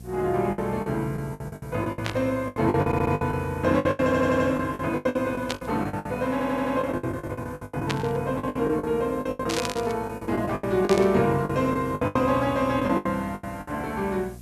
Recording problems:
hum; 60 Hz, harmonics up to 540 Hz, SNR 18 dB
background hiss; slope +1 dB per octave, SNR 27 dB
lost packets; 20% of the sound replaced, filled with the last packet
static burst; 5 times, first at 2 s; peak +1 dB vs average level
stutter; at 3 s, at 4 s and at 6.5 s

